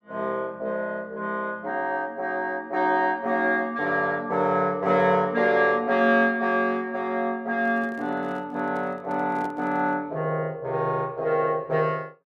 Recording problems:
handling noise; from 7.5 to 10 s; peak -12 dB vs average level

